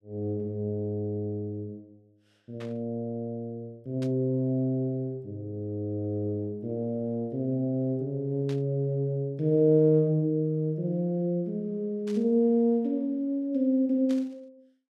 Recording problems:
static burst; 5 times, first at 2.5 s; peak -13 dB vs average level

